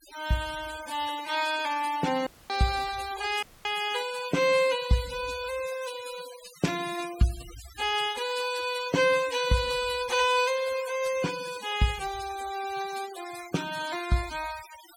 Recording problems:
noise reduction artefacts; signal-to-artefact ratio 13 dB
dropout; at 2.5 s and at 3.5 s

